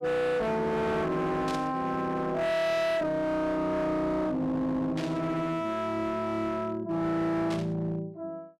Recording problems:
distortion; hard clipping, signal-to-distortion ratio 7 dB
burst of static; at 1.5 s, at 5 s and at 7.5 s; peak -7 dB vs average level

